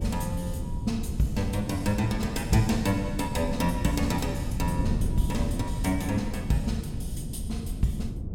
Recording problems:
wind on the microphone; below 150 Hz, SNR 3 dB

